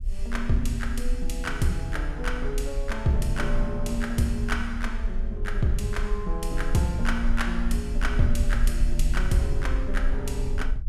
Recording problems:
low-frequency rumble; below 44 Hz, strongest tone 24 Hz, SNR 2 dB

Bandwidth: 14.5 kHz